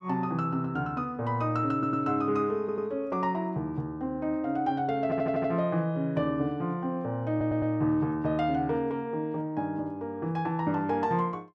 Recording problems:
stutter; 4 times, first at 1.5 s

